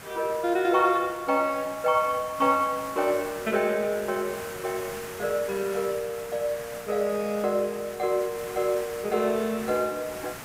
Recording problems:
background hiss; SNR 14 dB

